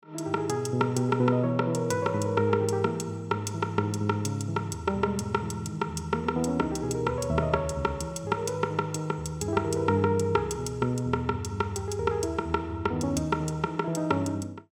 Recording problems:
none

